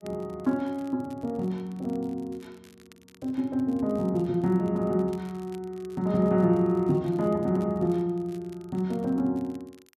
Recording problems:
crackle; vinyl, SNR 30 dB

